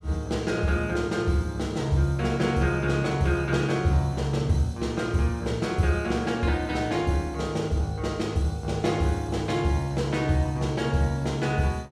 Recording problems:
none

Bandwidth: 15 kHz